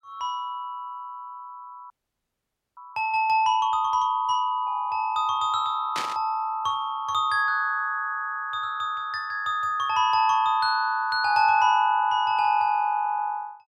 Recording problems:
audio freezing; at 2 s for 1 s
burst of static; at 6 s; peak -3 dB vs average level

